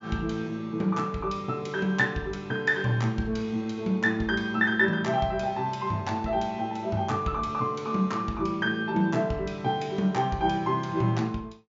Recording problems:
low-pass filter; nothing above 7.4 kHz

